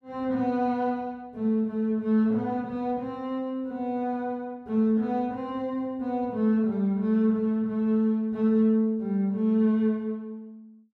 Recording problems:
none

